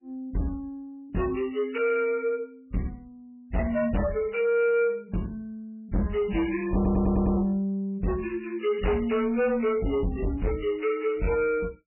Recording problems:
codec artefacts; MP3, log-spectral distance 2 dB, nothing above 2.4 kHz
distortion; soft clipping, signal-to-distortion ratio 7 dB
stutter; at 7 s

